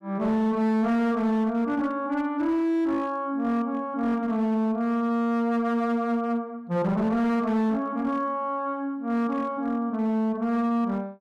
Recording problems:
distorted audio; hard clipping, uneven, signal-to-distortion ratio 11 dB

